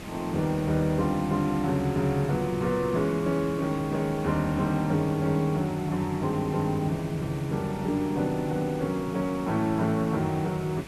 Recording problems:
background hiss; SNR 13 dB

